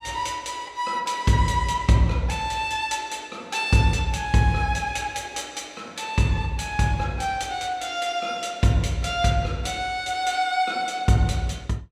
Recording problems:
none

